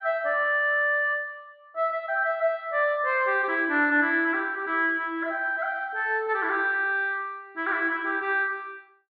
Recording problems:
treble cut off; nothing above 4.7 kHz

